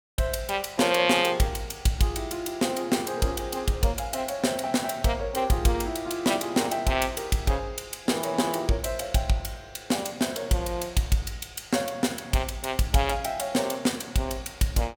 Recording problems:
none

